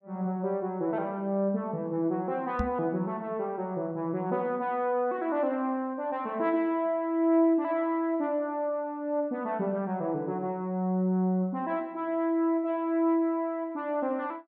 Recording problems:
knock on the microphone; at 2.5 s; peak +2 dB vs average level

